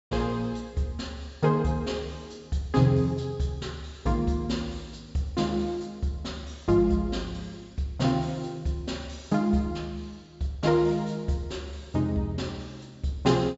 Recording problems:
treble missing; nothing above 8 kHz

